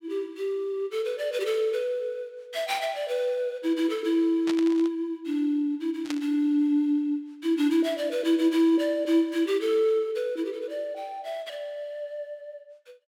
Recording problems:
static burst; at 4.5 s and at 6 s; peak -4 dB vs average level

